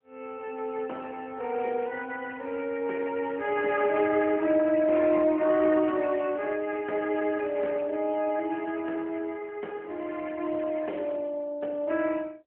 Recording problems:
phone line; 240 Hz to 3.3 kHz, AMR-NB

